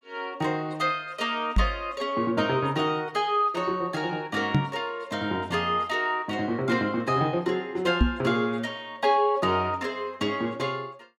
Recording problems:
knock on the microphone; at 1.5 s, at 4.5 s and at 8 s; peak +8 dB vs average level

